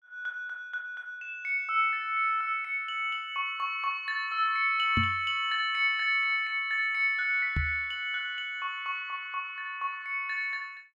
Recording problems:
microphone bump; at 5 s and at 7.5 s; peak +2 dB vs average level

